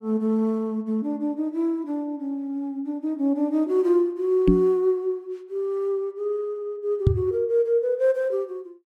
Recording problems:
microphone bump; at 4.5 s and at 7 s; peak +9 dB vs average level

